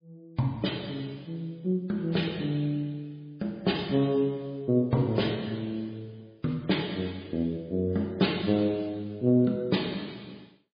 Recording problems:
lossy codec; MP3, log-spectral distance 4 dB, nothing above 4.8 kHz

